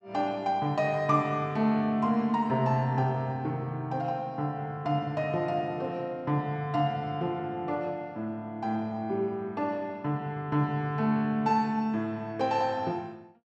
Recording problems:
none

